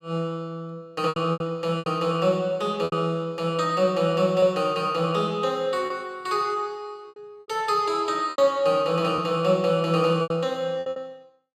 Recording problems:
packet loss; 8% of the sound replaced, filled with repeated pitch periods

